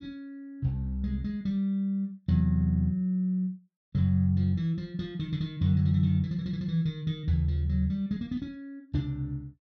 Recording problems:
none

